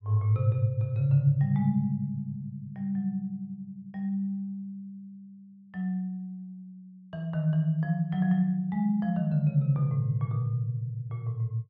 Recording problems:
none

